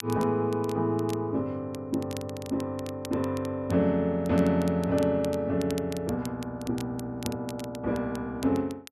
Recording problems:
crackle; vinyl, SNR 18 dB

